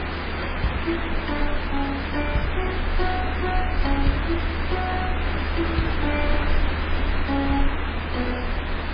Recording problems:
codec artefacts; MP3, log-spectral distance 4 dB, nothing above 4.6 kHz
background hiss; SNR 0 dB
rumble; below 76 Hz, SNR 1 dB
wind on the microphone; below 410 Hz, SNR 19 dB

